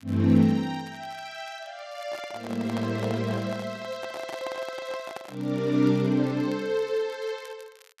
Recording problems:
crackling; vinyl, SNR 26 dB
microphone handling noise; from 2 to 5.5 s; peak -4 dB vs average level

